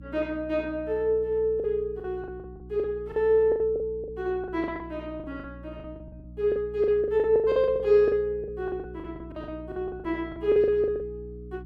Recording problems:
hum; 60 Hz, harmonics up to 300 Hz, SNR 18 dB
lost packets; 15% of the sound replaced, filled with the last packet

